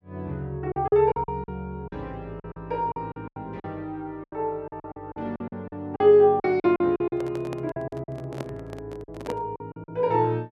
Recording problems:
lost packets; 13% of the sound replaced, filled with silence
handling noise; from 7 to 9.5 s; peak -6 dB vs average level

